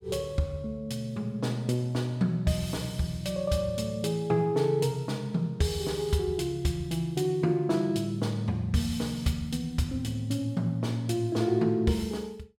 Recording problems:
none

